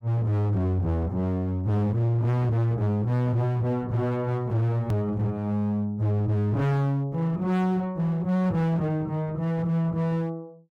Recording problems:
distortion; hard clipping, signal-to-distortion ratio 7 dB
click at an edit; at 5 s

